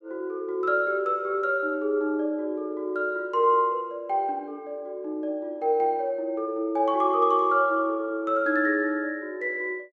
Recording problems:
none

